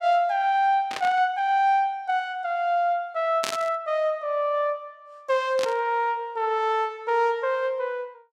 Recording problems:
static burst; at 1 s, at 3.5 s and at 5.5 s; peak -1 dB vs average level

